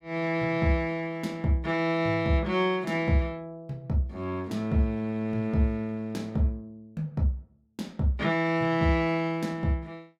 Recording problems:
none

